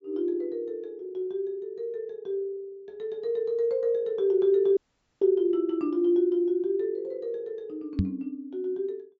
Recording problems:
treble cut off; nothing above 8 kHz
dropout; at 5 s
knock on the microphone; at 8 s; peak +6 dB vs average level

